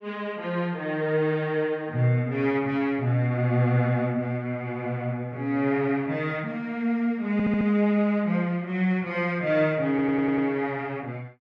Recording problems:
audio stuttering; at 7.5 s and at 10 s

